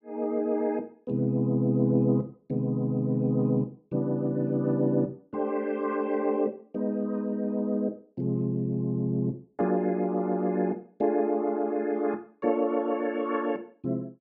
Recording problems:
none

